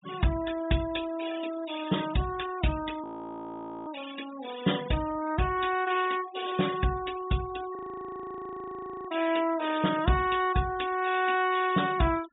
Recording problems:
low-pass filter; nothing above 4 kHz
noise reduction artefacts; signal-to-artefact ratio 14 dB
audio freezing; at 3 s for 1 s and at 8 s for 1.5 s

